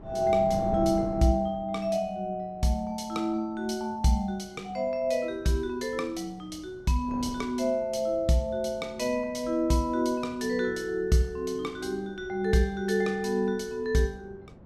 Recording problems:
wind noise; below 370 Hz, SNR 17 dB

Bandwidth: 14.5 kHz